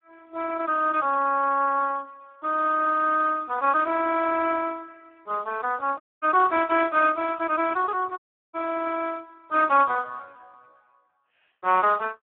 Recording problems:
telephone audio; 240 Hz to 3.3 kHz, Speex
audio cutting out; at 6 s and at 8 s

